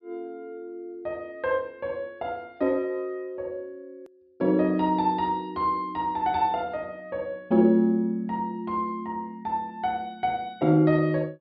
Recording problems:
low-pass filter; nothing above 5.5 kHz
click at an edit; at 4 s

